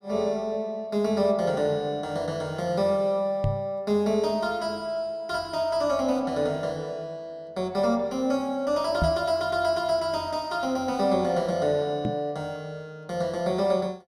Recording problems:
microphone thump; at 3.5 s, at 9 s and at 12 s; peak +3 dB vs average level

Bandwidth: 15 kHz